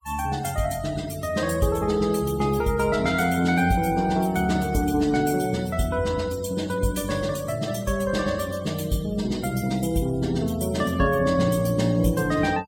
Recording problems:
noise reduction artefacts; signal-to-artefact ratio 20 dB

